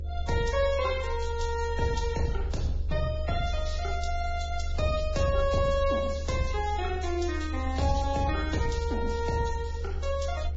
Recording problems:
codec artefacts; Vorbis, then Vorbis, log-spectral distance 3 dB, nothing above 7.3 kHz
hum; 50 Hz, harmonics up to 550 Hz, SNR 22 dB
low-frequency rumble; below 74 Hz, strongest tone 72 Hz, SNR 4 dB
crackling; at 3.5 s, from 5.5 to 7 s and from 7 to 9 s; loose cable, SNR 21 dB

